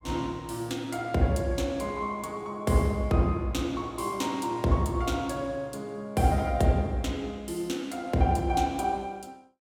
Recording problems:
none

